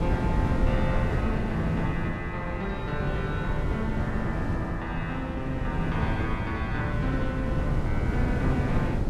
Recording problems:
wind on the microphone; below 220 Hz, SNR -2 dB

